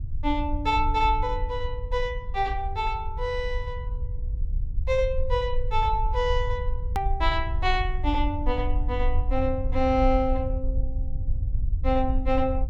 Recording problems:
low-frequency rumble; below 62 Hz, SNR 3 dB
click at an edit; at 7 s

